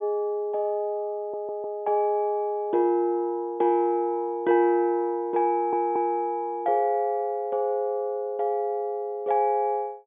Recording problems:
treble missing; nothing above 3.5 kHz
stutter; at 1 s and at 5.5 s

